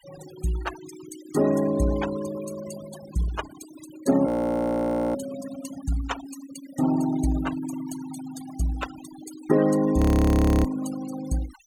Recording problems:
noise reduction artefacts; signal-to-artefact ratio 14 dB
frozen audio; at 4.5 s for 1 s and at 10 s for 0.5 s

